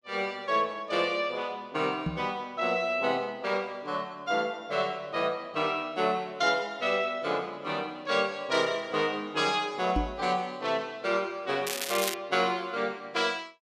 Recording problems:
microphone bump; at 2 s and at 10 s; peak +3 dB vs average level
crackling; at 12 s; loose cable, SNR 4 dB

